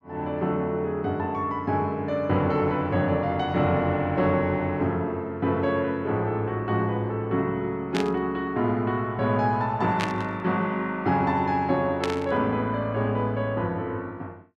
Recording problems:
static burst; at 8 s, at 10 s and at 12 s; peak 0 dB vs average level

